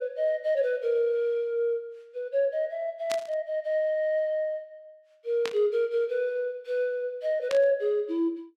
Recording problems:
burst of static; at 3 s, at 5.5 s and at 7.5 s; peak -3 dB vs average level

